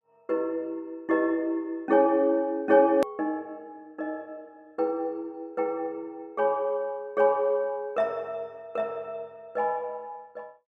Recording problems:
click at an edit; at 3 s

